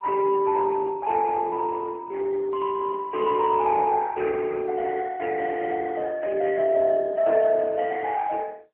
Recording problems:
telephone audio; 300 Hz to 2.5 kHz, AMR-NB

